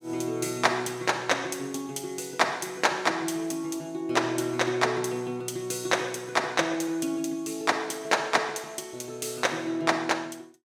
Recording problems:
none

